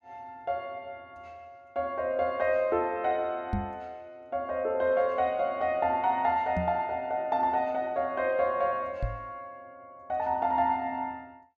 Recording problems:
knock on the microphone; at 3.5 s, at 6.5 s and at 9 s; peak +2 dB vs average level

